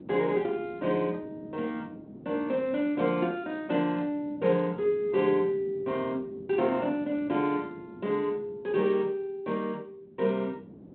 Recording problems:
telephone audio; 150 Hz to 3.7 kHz, G.726
wind noise; below 360 Hz, SNR 18 dB

